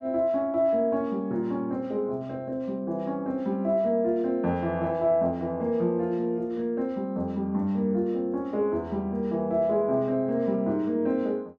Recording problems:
none

